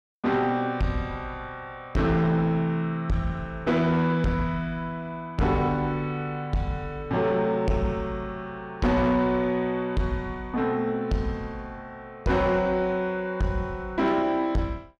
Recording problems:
distortion; soft clipping, signal-to-distortion ratio 10 dB

